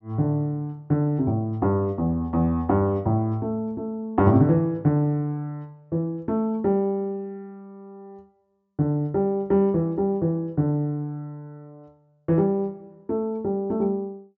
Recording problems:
low-pass filter; nothing above 8 kHz

